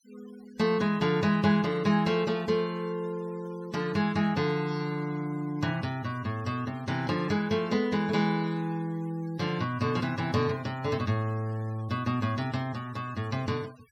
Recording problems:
noise reduction artefacts; signal-to-artefact ratio 23 dB

